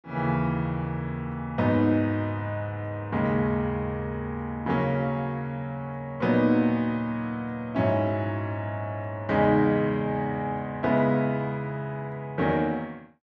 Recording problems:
none

